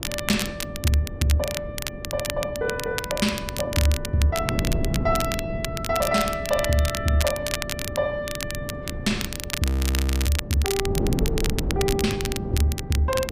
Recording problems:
wind noise; below 250 Hz, SNR 6 dB
crackling; vinyl, SNR 6 dB
frozen audio; at 9.5 s for 0.5 s

